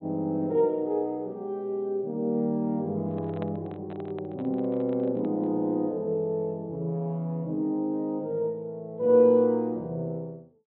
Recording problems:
treble cut off; nothing above 4.1 kHz
handling noise; from 3 to 5.5 s; peak -8 dB vs average level

